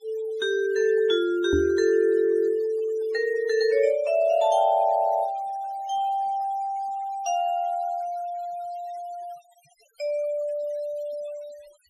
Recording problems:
noise reduction artefacts; signal-to-artefact ratio 28 dB
microphone thump; at 1.5 s; peak +2 dB vs average level

